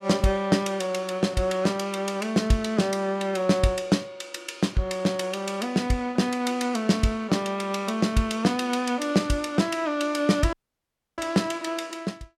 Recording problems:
audio cutting out; at 11 s for 0.5 s

